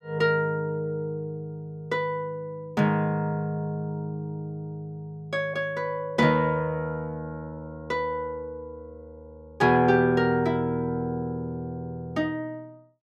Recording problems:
none

